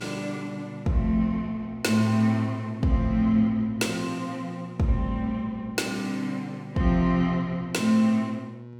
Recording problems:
hum; 60 Hz, harmonics up to 960 Hz, SNR 18 dB

